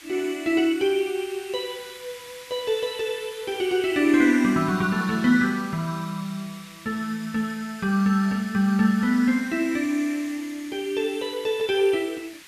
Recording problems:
background hiss; SNR 19 dB

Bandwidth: 14 kHz